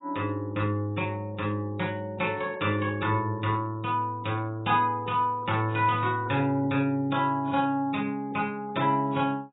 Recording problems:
lossy compression; AAC, log-spectral distance 3 dB, nothing above 3.8 kHz

